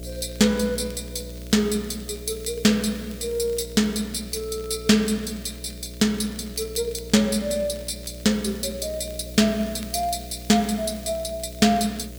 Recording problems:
electrical hum; 60 Hz, harmonics up to 660 Hz, SNR 15 dB
background hiss; slope +2 dB per octave, SNR 21 dB
crackling; vinyl, SNR 26 dB

